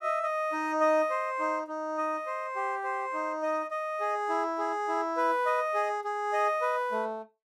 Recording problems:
none

